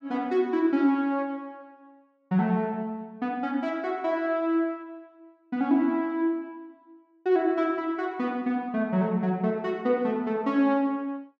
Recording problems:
none

